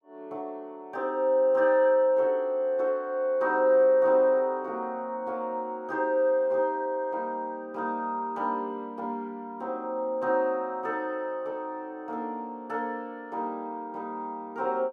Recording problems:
none

